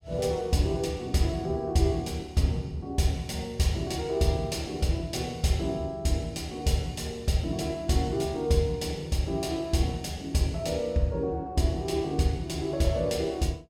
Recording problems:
none

